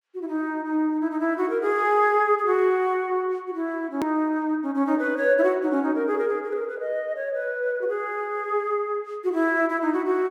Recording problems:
hard cut with a click; at 4 s

